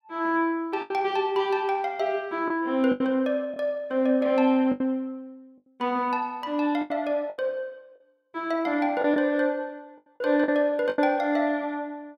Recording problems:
packet loss; 6% of the sound replaced, filled with the last packet

